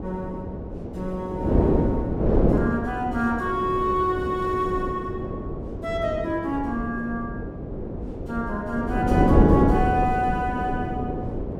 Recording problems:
wind noise; below 420 Hz, SNR -1 dB

